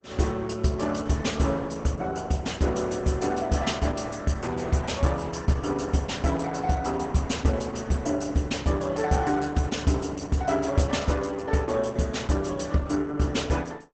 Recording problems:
codec artefacts; Opus, log-spectral distance 5 dB, nothing above 8 kHz

